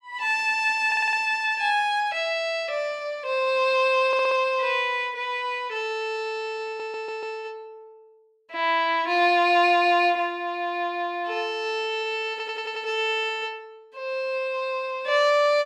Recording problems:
stutter; 4 times, first at 1 s

